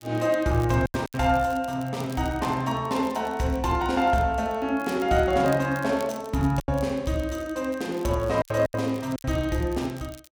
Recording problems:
crackling; vinyl, SNR 23 dB
packet loss; 5% of the sound replaced, filled with silence

